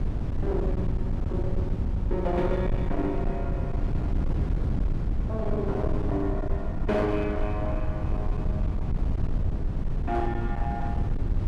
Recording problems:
distorted audio; hard clipping, uneven, signal-to-distortion ratio 10 dB
rumble; below 120 Hz, SNR -1 dB

